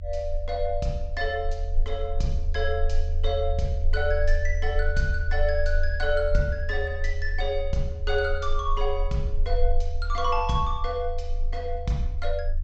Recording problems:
treble cut off; nothing above 8 kHz
low-frequency rumble; below 46 Hz, strongest tone 24 Hz, SNR 2 dB

